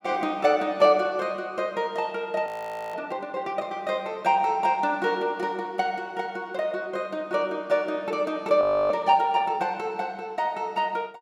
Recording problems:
audio freezing; at 2.5 s and at 8.5 s

